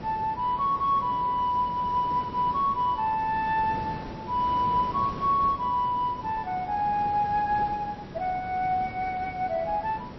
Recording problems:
lossy codec; MP3, log-spectral distance 2 dB
background hiss; slope -7 dB per octave, SNR 13 dB

